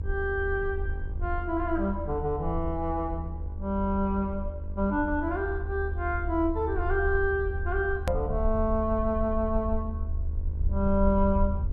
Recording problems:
hum; 50 Hz, harmonics up to 1.1 kHz, SNR 21 dB
rumble; below 76 Hz, SNR 5 dB
click at an edit; at 8 s

